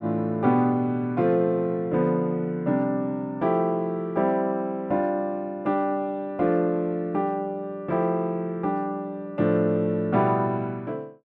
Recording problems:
none

